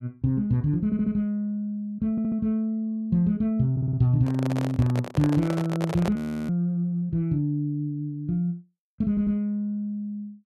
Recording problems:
stutter; 4 times, first at 1 s
handling noise; from 4 to 6 s; peak -2 dB vs average level
audio freezing; at 6 s

